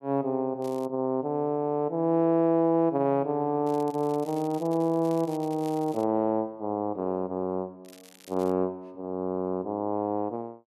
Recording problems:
crackle; at 0.5 s, from 3.5 to 6 s and at 8 s; loose cable, SNR 24 dB

